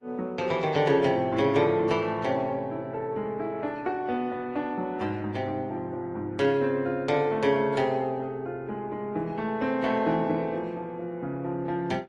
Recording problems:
lossy compression; Opus, then AAC, log-spectral distance 2 dB, nothing above 11.3 kHz

